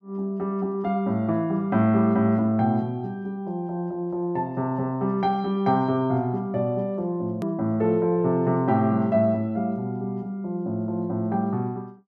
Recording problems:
hard cut with a click; at 7.5 s

